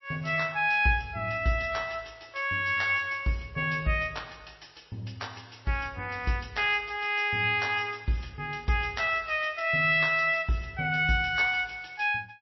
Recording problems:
lossy codec; MP3, log-spectral distance 5 dB, nothing above 5.7 kHz

